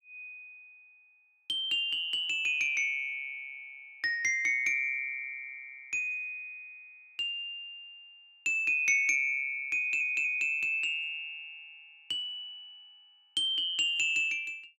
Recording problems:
stutter; at 10 s

